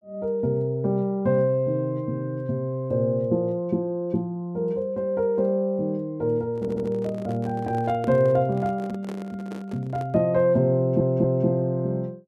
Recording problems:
microphone handling noise; from 6.5 to 10 s; peak -8 dB vs average level
stutter; at 6.5 s and at 11 s

